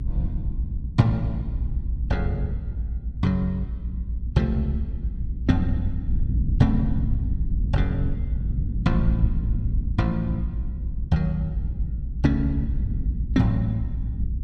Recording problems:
low-frequency rumble; below 90 Hz, SNR 2 dB

